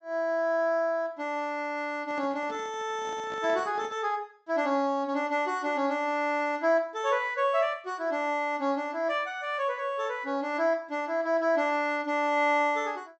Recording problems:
low-pass filter; nothing above 8 kHz
microphone handling noise; from 2 to 4 s; peak -11 dB vs average level

